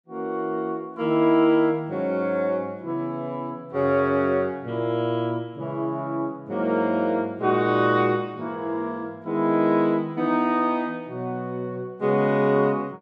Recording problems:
none

